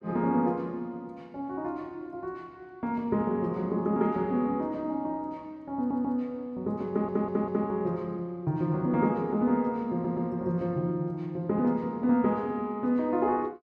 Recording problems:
audio stuttering; at 6 s, at 7 s and at 10 s

